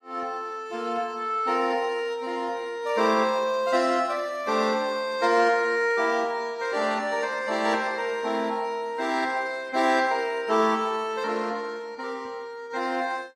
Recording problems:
lossy compression; AAC, log-spectral distance 2 dB, nothing above 14.3 kHz

